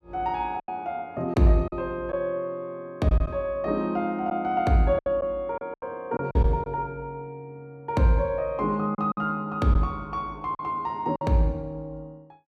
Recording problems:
lost packets; 6% of the sound replaced, filled with silence

